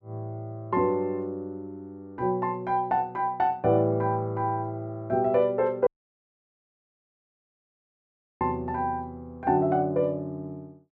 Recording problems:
dropout; at 6 s for 2.5 s

